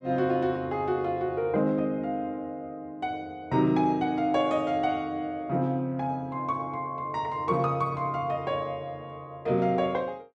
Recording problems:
none

